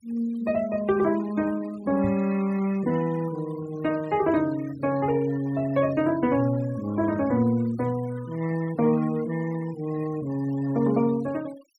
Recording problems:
denoising artefacts; signal-to-artefact ratio 19 dB
knock on the microphone; at 2 s; peak -3 dB vs average level

